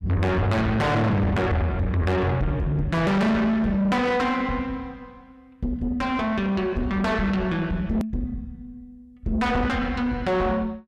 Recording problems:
distorted audio; soft clipping, signal-to-distortion ratio 6 dB
hard cut with a click; at 8 s

